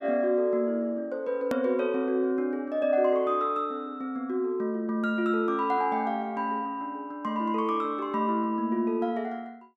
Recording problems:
click at an edit; at 1.5 s

